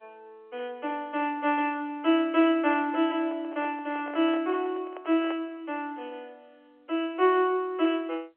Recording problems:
telephone audio; 300 Hz to 3.2 kHz, G.711
handling noise; from 3 to 5.5 s; peak -7 dB vs average level

